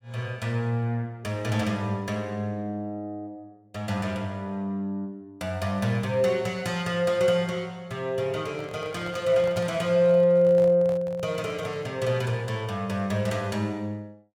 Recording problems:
handling noise; from 8.5 to 12 s; peak -8 dB vs average level

